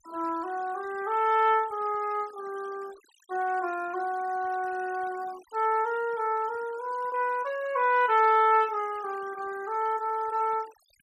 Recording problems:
noise reduction artefacts; signal-to-artefact ratio 23 dB

